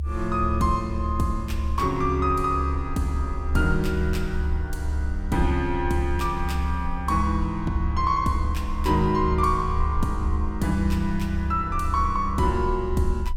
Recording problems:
low-frequency rumble; below 72 Hz, strongest tone 72 Hz, SNR 3 dB

